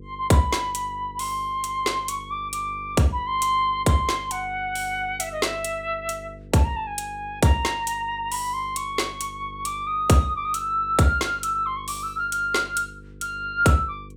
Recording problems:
hum; 50 Hz, harmonics up to 500 Hz, SNR 20 dB

